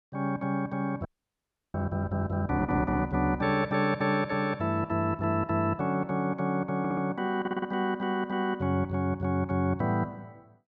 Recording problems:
audio freezing; at 1 s for 0.5 s
audio stuttering; at 7 s and at 7.5 s

